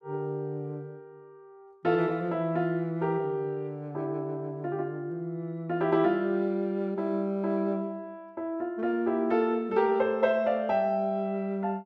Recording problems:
none

